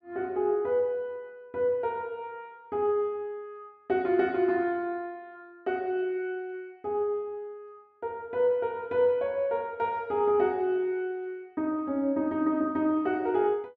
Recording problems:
none

